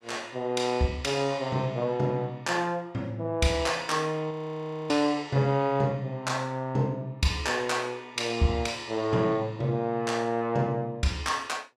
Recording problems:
audio freezing; at 4.5 s for 0.5 s

